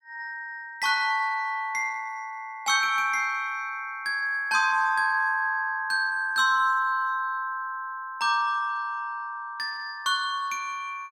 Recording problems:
none

